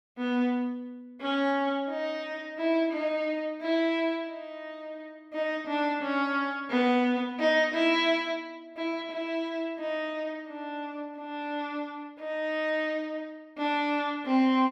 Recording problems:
none

